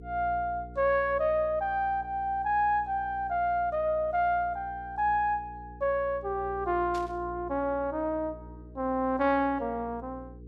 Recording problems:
hum; 60 Hz, harmonics up to 480 Hz, SNR 18 dB
burst of static; at 7 s; peak -12 dB vs average level

